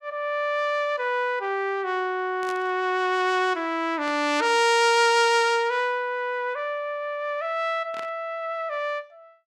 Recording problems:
burst of static; at 2.5 s, at 4 s and at 8 s; peak -11 dB vs average level

